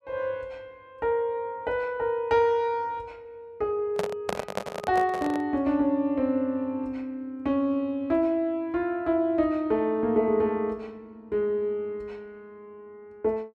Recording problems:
handling noise; from 4 to 5.5 s; peak +2 dB vs average level

